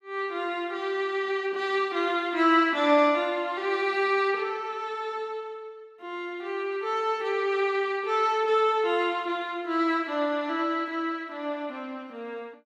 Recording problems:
none

